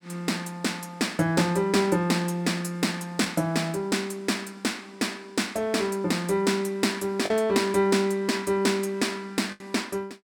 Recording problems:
packet loss; 1.4% of the sound replaced, filled with the last packet

